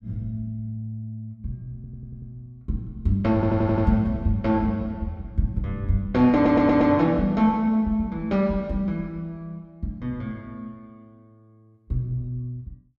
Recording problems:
audio stuttering; at 2 s, at 3.5 s and at 6.5 s

